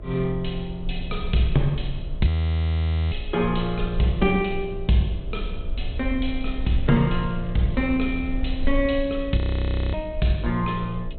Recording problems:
low-pass filter; nothing above 4 kHz
electrical hum; 60 Hz, harmonics up to 660 Hz, SNR 20 dB
rumble; below 52 Hz, SNR 10 dB
frozen audio; at 2.5 s for 1 s and at 9.5 s for 0.5 s
crackle; from 6.5 to 9 s; loose cable, SNR 28 dB

